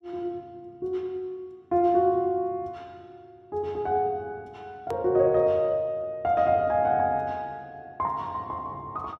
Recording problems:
hard cut with a click; at 5 s

